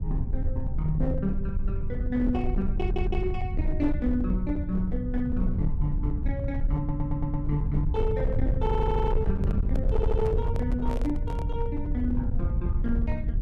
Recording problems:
distorted audio; hard clipping, uneven, signal-to-distortion ratio 11 dB
low-frequency rumble; below 88 Hz, SNR -1 dB
stutter; 4 times, first at 3 s
handling noise; from 9.5 to 11 s; peak -2 dB vs average level

